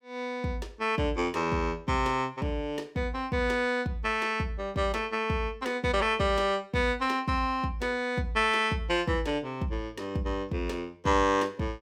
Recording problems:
none

